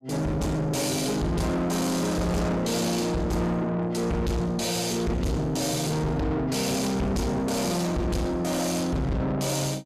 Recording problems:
distorted audio; soft clipping, signal-to-distortion ratio 7 dB

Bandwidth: 14.5 kHz